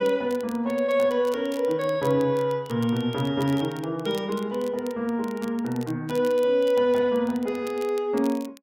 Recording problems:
crackle; vinyl, SNR 23 dB

